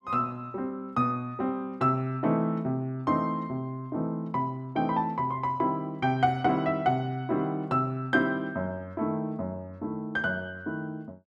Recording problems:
none

